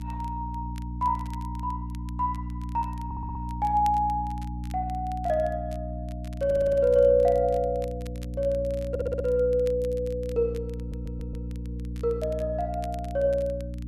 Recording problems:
hum; 60 Hz, harmonics up to 300 Hz, SNR 8 dB
crackle; vinyl, SNR 27 dB
audio stuttering; 4 times, first at 3 s

